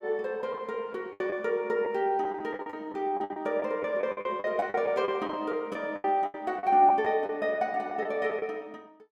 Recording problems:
packet loss; 12% of the sound replaced, filled with the last packet

